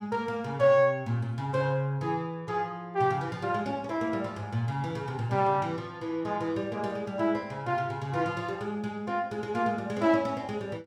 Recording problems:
none

